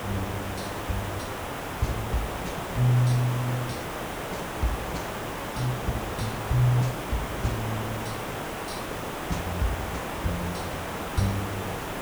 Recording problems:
hiss; SNR 3 dB

